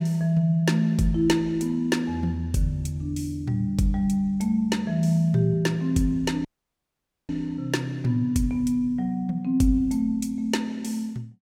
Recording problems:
dropout; at 6.5 s for 1 s

